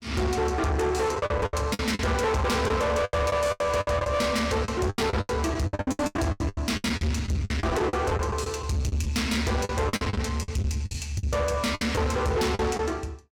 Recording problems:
distorted audio; soft clipping, signal-to-distortion ratio 8 dB
packet loss; 16% of the sound replaced, filled with the last packet

